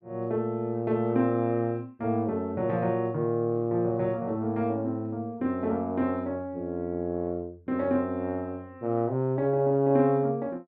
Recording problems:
none

